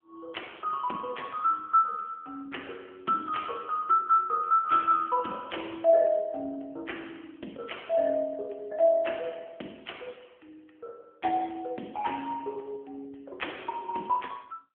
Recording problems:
phone line; 220 Hz to 3.3 kHz, AMR-NB

